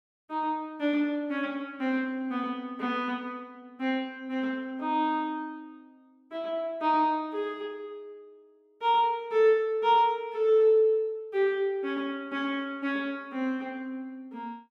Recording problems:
none

